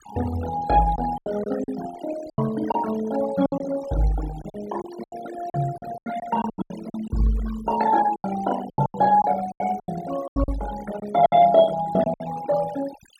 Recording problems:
noise reduction artefacts; signal-to-artefact ratio 14 dB
packet loss; 13% of the sound replaced, filled with silence

